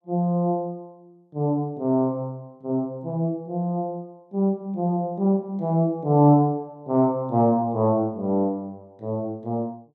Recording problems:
none

